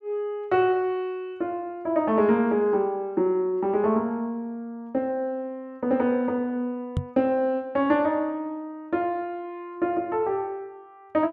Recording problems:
microphone thump; at 7 s; peak +3 dB vs average level

